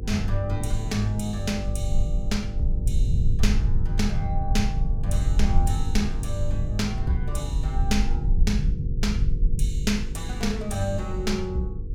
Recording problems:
hum; 50 Hz, harmonics up to 500 Hz, SNR 7 dB
low-frequency rumble; below 66 Hz, SNR -1 dB

